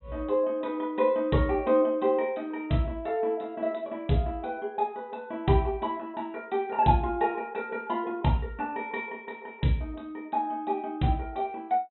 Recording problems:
treble missing; nothing above 4 kHz

